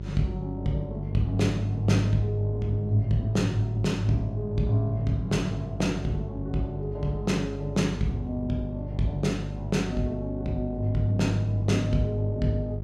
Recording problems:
electrical hum; 50 Hz, harmonics up to 550 Hz, SNR 8 dB

